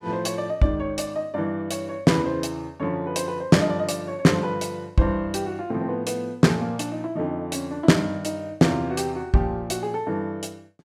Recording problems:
none

